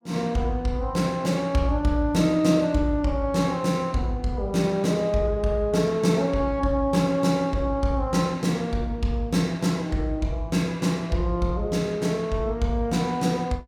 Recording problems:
none

